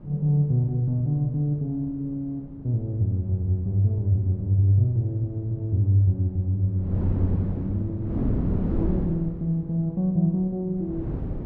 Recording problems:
wind on the microphone; below 240 Hz, SNR 5 dB

